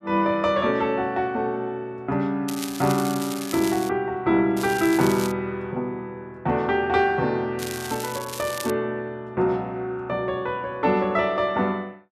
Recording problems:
crackling; from 2.5 to 4 s, at 4.5 s and from 7.5 to 8.5 s; loose cable, SNR 11 dB

